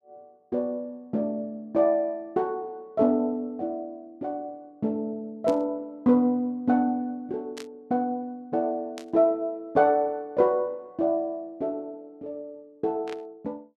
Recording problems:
burst of static; 4 times, first at 5.5 s; peak -10 dB vs average level

